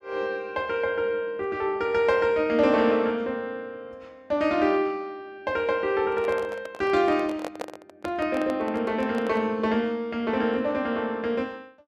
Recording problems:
handling noise; from 6 to 9.5 s; peak -3 dB vs average level

